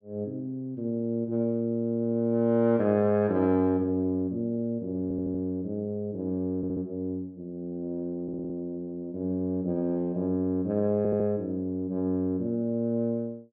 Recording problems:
stutter; 4 times, first at 5 s

